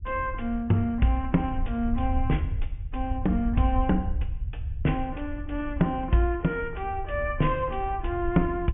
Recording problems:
low-pass filter; nothing above 3.2 kHz
low-frequency rumble; below 76 Hz, SNR 6 dB

